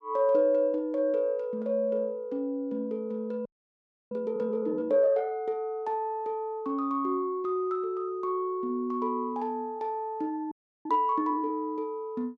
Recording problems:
frozen audio; at 3.5 s for 0.5 s and at 11 s

